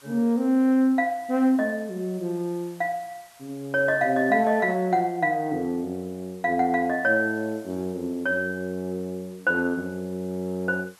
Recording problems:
hiss; SNR 27 dB

